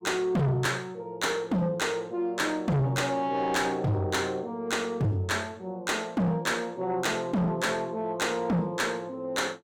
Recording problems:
distorted audio; soft clipping, signal-to-distortion ratio 6 dB

